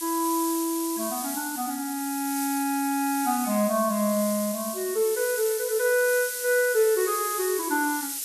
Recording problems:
hiss; SNR 6 dB

